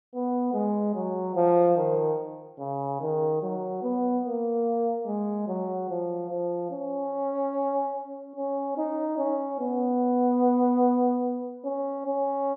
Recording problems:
none

